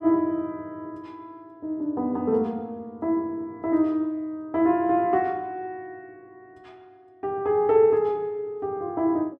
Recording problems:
none

